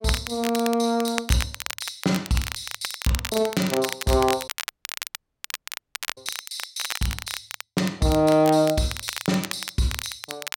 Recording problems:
crackling; vinyl, SNR 8 dB
dropout; at 4.5 s for 1.5 s

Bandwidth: 16.5 kHz